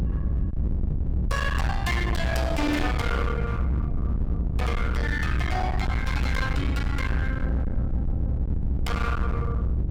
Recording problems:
distortion; hard clipping, signal-to-distortion ratio 7 dB
low-frequency rumble; below 140 Hz, SNR -2 dB

